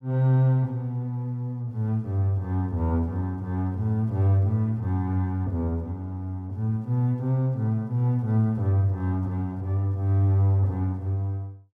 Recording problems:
none

